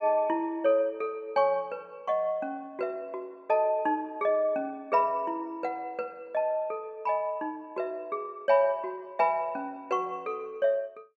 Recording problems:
none

